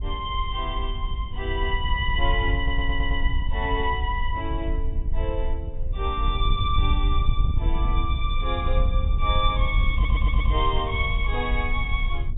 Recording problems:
treble cut off; nothing above 4 kHz
wind on the microphone; below 62 Hz, SNR -1 dB
audio stuttering; at 2.5 s and at 10 s

